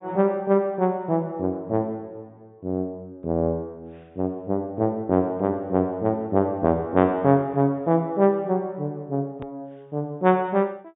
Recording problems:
treble cut off; nothing above 4 kHz
hard cut with a click; at 9.5 s

